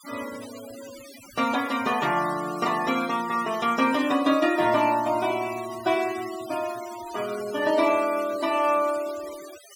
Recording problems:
noise reduction artefacts; signal-to-artefact ratio 16 dB

